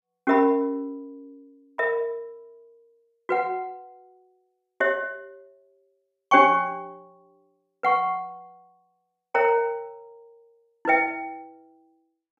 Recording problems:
none

